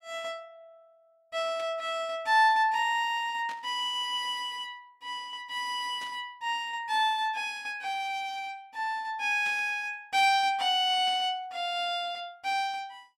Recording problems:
burst of static; 5 times, first at 1.5 s; peak -12 dB vs average level

